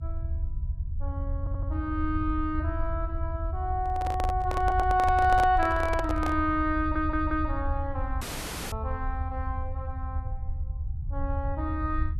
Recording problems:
rumble; below 80 Hz, SNR 5 dB
audio stuttering; at 1.5 s, at 4.5 s and at 7 s
microphone handling noise; from 4 to 6.5 s; peak 0 dB vs average level
audio cutting out; at 8 s for 0.5 s

